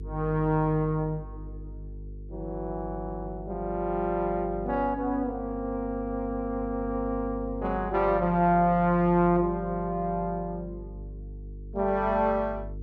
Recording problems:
electrical hum; 50 Hz, harmonics up to 450 Hz, SNR 13 dB

